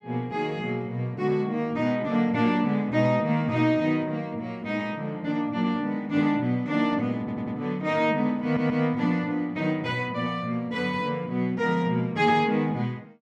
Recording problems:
audio stuttering; at 7 s and at 8.5 s

